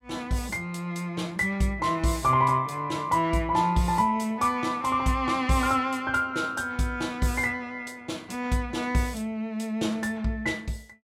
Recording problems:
none

